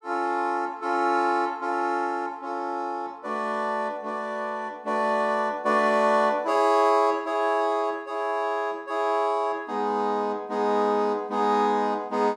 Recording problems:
none

